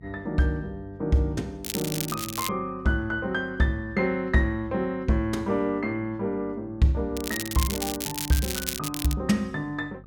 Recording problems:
electrical hum; 50 Hz, harmonics up to 500 Hz, SNR 21 dB
crackle; at 1.5 s and from 7 to 9 s; loose cable, SNR 4 dB

